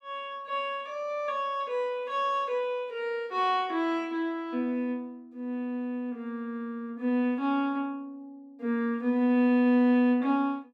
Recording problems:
none

